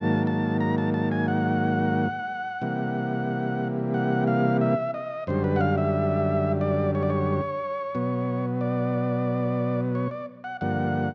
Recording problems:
none

